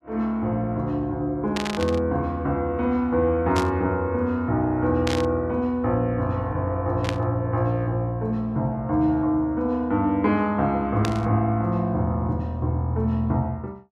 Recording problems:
static burst; 5 times, first at 1.5 s; peak -1 dB vs average level

